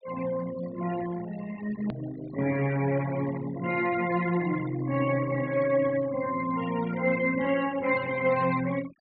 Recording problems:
treble missing; nothing above 4.7 kHz
noise reduction artefacts; signal-to-artefact ratio 16 dB
hard cut with a click; at 2 s

